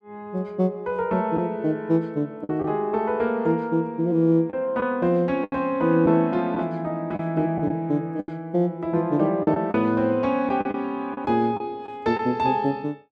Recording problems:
lost packets; 5% of the sound replaced, filled with the last packet

